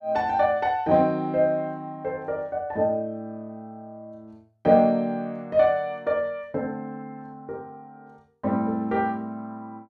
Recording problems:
none

